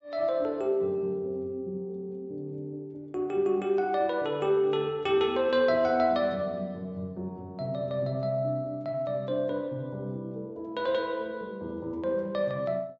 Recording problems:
low-pass filter; nothing above 8 kHz

